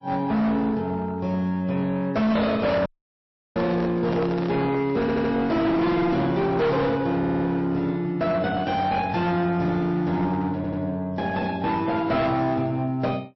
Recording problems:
lossy compression; MP3, then MP3, log-spectral distance 2 dB, nothing above 5.7 kHz
distortion; hard clipping, uneven, signal-to-distortion ratio 6 dB
dropout; at 3 s for 0.5 s
microphone handling noise; from 3.5 to 5.5 s; peak -4 dB vs average level
stutter; at 5 s, at 7 s and at 11 s

